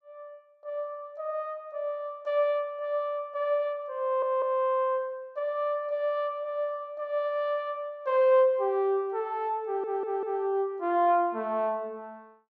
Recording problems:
audio stuttering; at 4 s and at 9.5 s

